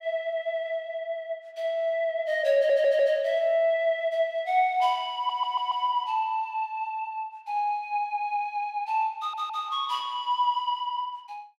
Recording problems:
audio stuttering; at 2.5 s, at 5 s and at 9 s

